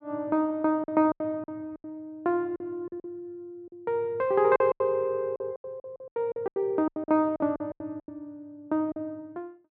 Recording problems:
packet loss; 14% of the sound replaced, filled with silence

